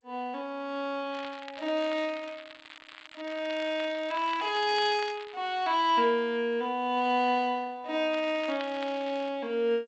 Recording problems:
lossy compression; G.722, log-spectral distance 5 dB
crackle; from 1 to 5.5 s and from 8 to 9.5 s; loose cable, SNR 17 dB

